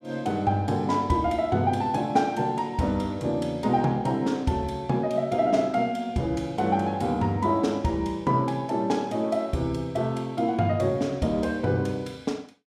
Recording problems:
none

